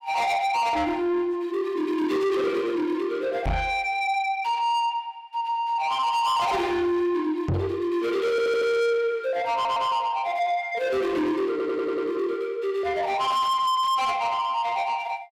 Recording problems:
distorted audio; soft clipping, signal-to-distortion ratio 8 dB
microphone bump; at 3.5 s and at 7.5 s; peak +2 dB vs average level
audio stuttering; at 8.5 s, at 9.5 s and at 12 s

